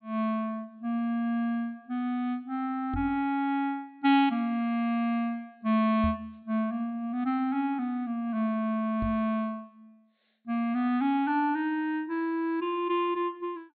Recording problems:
low-pass filter; nothing above 4.3 kHz
microphone thump; at 3 s, at 6 s and at 9 s; peak -1 dB vs average level

